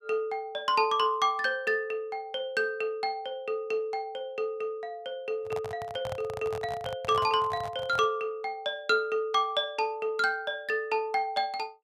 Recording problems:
handling noise; from 5.5 to 8 s; peak -4 dB vs average level

